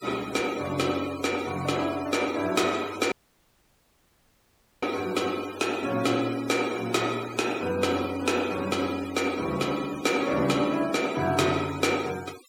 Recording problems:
noise reduction artefacts; signal-to-artefact ratio 15 dB
dropout; at 3 s for 1.5 s

